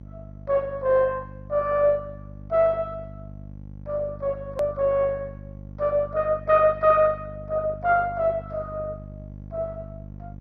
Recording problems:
lossy compression; MP2, log-spectral distance 2 dB
hum; 50 Hz, harmonics up to 550 Hz, SNR 17 dB
click at an edit; at 4.5 s

